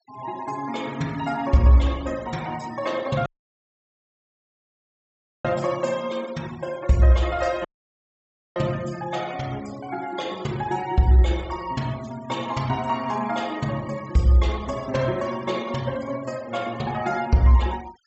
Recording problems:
treble cut off; nothing above 7.8 kHz
denoising artefacts; signal-to-artefact ratio 20 dB
dropout; at 3.5 s for 2 s and at 7.5 s for 1 s

